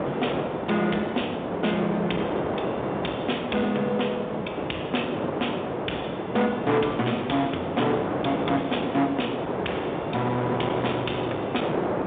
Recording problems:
telephone audio; 150 Hz to 3.7 kHz, G.711
distortion; hard clipping, signal-to-distortion ratio 9 dB
wind noise; below 820 Hz, SNR 2 dB

